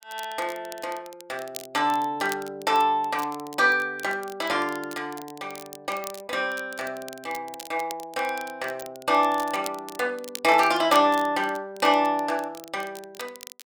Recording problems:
crackle; vinyl, SNR 18 dB

